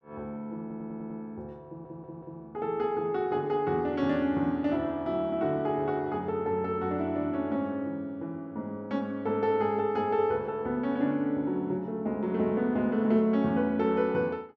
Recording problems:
audio stuttering; at 0.5 s and at 1.5 s

